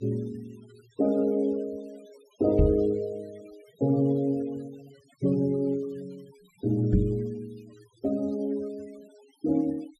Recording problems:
noise reduction artefacts; signal-to-artefact ratio 28 dB
microphone bump; at 2.5 s and at 7 s; peak +8 dB vs average level

